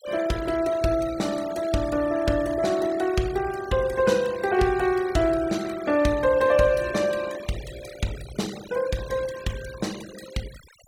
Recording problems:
noise reduction artefacts; signal-to-artefact ratio 17 dB

